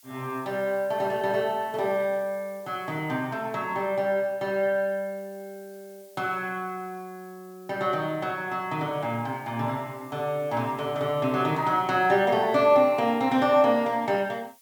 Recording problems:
background hiss; slope +5 dB per octave, SNR 28 dB

